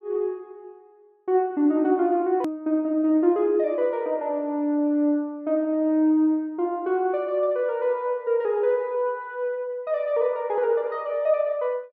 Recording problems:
edit click; at 2.5 s

